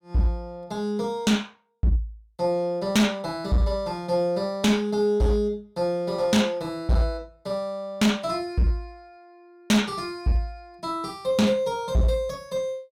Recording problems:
distorted audio; hard clipping, signal-to-distortion ratio 10 dB

